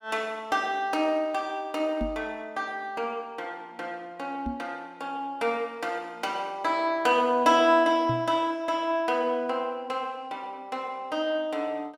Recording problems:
microphone bump; at 2 s, at 4.5 s and at 8 s; peak -1 dB vs average level

